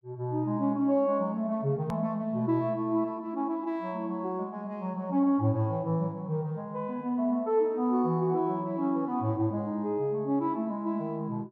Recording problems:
click at an edit; at 2 s

